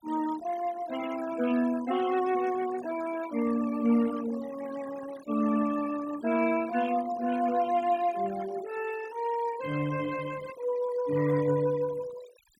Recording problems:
denoising artefacts; signal-to-artefact ratio 16 dB

